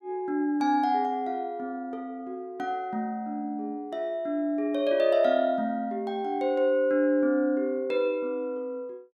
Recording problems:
none

